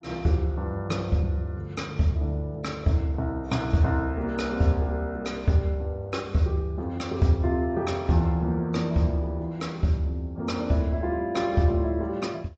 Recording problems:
codec artefacts; AAC, log-spectral distance 2 dB

